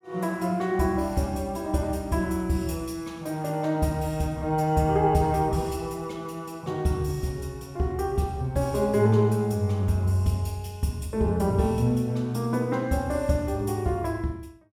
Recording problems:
none

